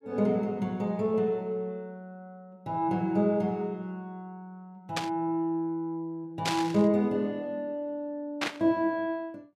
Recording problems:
burst of static; at 5 s, at 6.5 s and at 8.5 s; peak +4 dB vs average level

